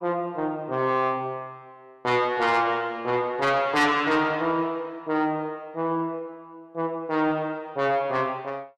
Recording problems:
distorted audio; soft clipping, signal-to-distortion ratio 11 dB

